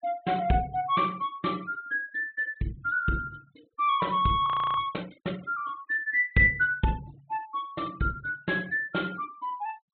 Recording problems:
low-pass filter; nothing above 4 kHz
denoising artefacts; signal-to-artefact ratio 25 dB
frozen audio; at 4.5 s

